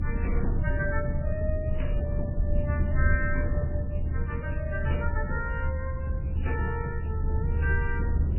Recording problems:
codec artefacts; MP3, then MP3, log-spectral distance 2 dB, nothing above 2.9 kHz
low-frequency rumble; below 88 Hz, SNR -5 dB

